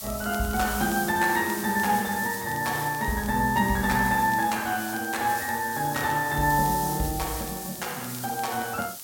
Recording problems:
hiss; SNR 9 dB
crackle; vinyl, SNR 24 dB

